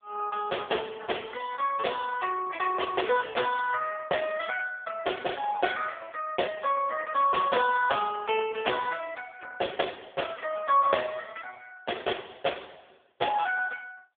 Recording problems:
telephone audio; 320 Hz to 3.5 kHz, AMR-NB

